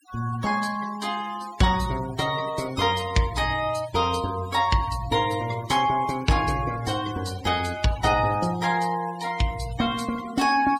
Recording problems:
denoising artefacts; signal-to-artefact ratio 16 dB

